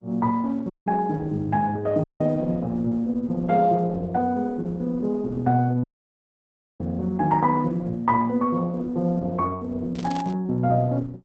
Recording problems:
lossy codec; Opus, log-spectral distance 2 dB, nothing above 7.6 kHz
audio cutting out; at 0.5 s, at 2 s and at 6 s for 1 s
burst of static; at 10 s; peak -11 dB vs average level

